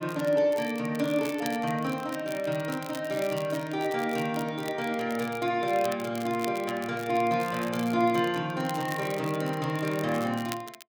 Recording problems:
crackle; vinyl, SNR 16 dB

